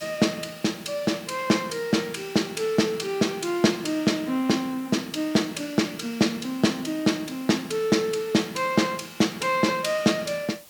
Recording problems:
background hiss; slope 0 dB per octave, SNR 22 dB

